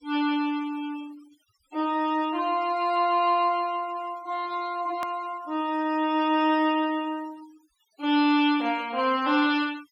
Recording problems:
denoising artefacts; signal-to-artefact ratio 22 dB
click at an edit; at 5 s

